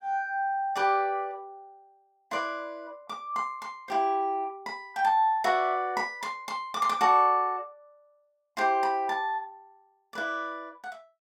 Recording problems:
none

